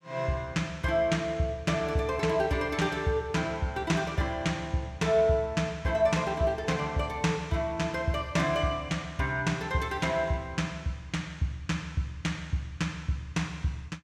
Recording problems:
none

